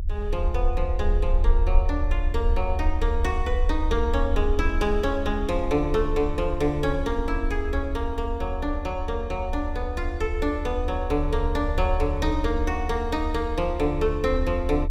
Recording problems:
rumble; below 66 Hz, strongest tone 32 Hz, SNR 2 dB

